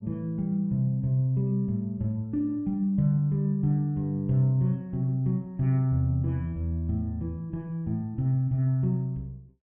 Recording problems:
treble missing; nothing above 3.4 kHz

